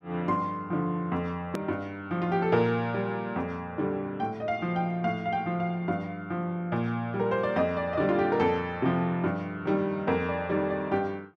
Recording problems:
click at an edit; at 1.5 s

